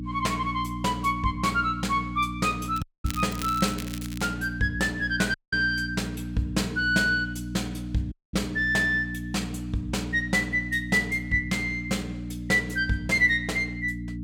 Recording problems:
electrical hum; 60 Hz, harmonics up to 300 Hz, SNR 8 dB
crackling; from 3 to 4.5 s; loose cable, SNR 13 dB
audio cutting out; at 3 s, at 5.5 s and at 8 s

